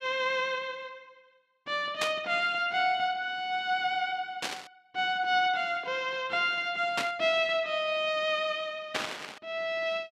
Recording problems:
static burst; 4 times, first at 2 s; peak +3 dB vs average level

